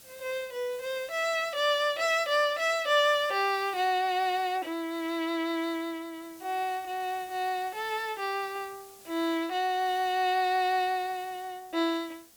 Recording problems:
hiss; SNR 22 dB

